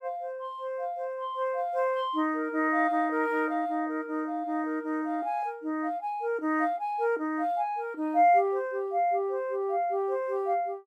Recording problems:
none

